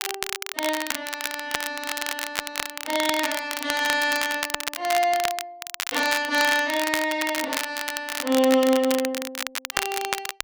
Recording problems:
crackle; vinyl, SNR 5 dB

